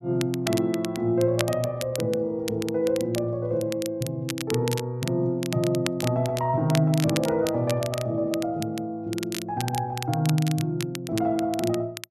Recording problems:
crackling; vinyl, SNR 11 dB

